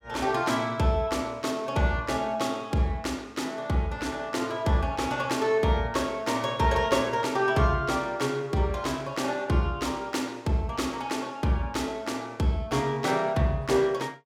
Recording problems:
none

